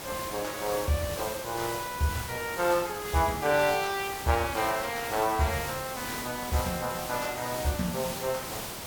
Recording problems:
hiss; slope -3 dB per octave, SNR 7 dB

